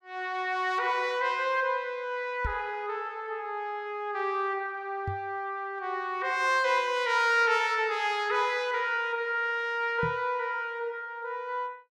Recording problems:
microphone bump; at 2.5 s, at 5 s and at 10 s; peak -2 dB vs average level

